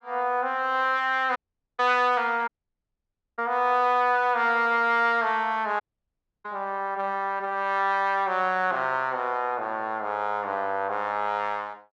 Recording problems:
dropout; at 1.5 s, at 2.5 s for 1 s and at 6 s for 0.5 s

